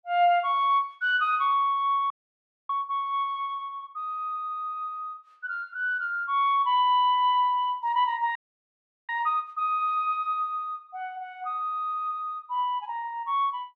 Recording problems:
frozen audio; at 2 s for 0.5 s and at 8.5 s for 0.5 s

